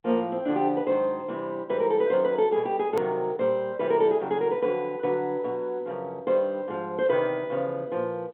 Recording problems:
phone line; 190 Hz to 3.7 kHz, G.711
edit click; at 3 s

